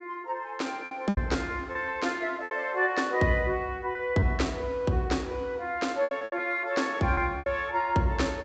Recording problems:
low-pass filter; nothing above 8 kHz
packet loss; 8% of the sound replaced, filled with repeated pitch periods

